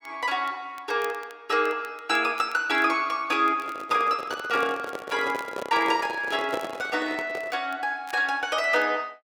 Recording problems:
crackling; vinyl, SNR 26 dB
microphone handling noise; from 3.5 to 7.5 s; peak -1 dB vs average level

